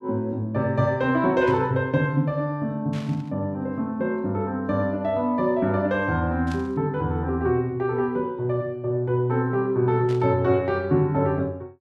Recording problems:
static burst; 4 times, first at 1.5 s; peak -13 dB vs average level

